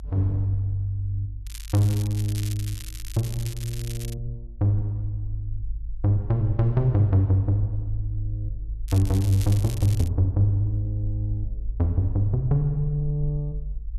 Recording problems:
low-frequency rumble; below 52 Hz, strongest tone 50 Hz, SNR 11 dB
crackle; from 1.5 to 4 s and from 9 to 10 s; loose cable, SNR 15 dB

